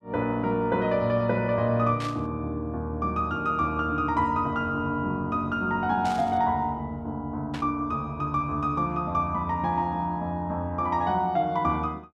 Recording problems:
burst of static; at 2 s, at 6 s and at 7.5 s; peak -7 dB vs average level

